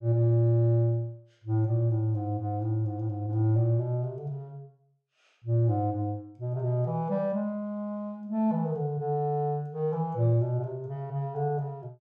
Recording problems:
none

